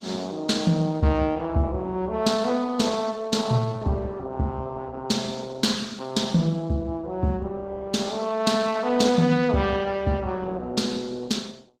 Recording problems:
codec artefacts; Opus, log-spectral distance 3 dB, nothing above 15.5 kHz

